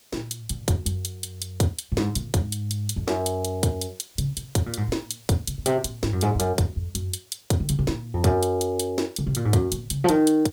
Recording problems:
background hiss; SNR 27 dB

